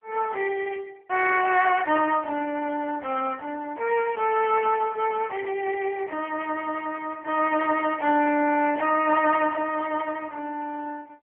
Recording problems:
phone line; 320 Hz to 3 kHz, AMR-NB

